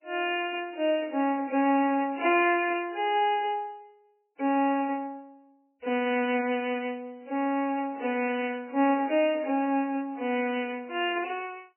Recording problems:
lossy compression; AAC, then MP3, log-spectral distance 3 dB, nothing above 2.4 kHz

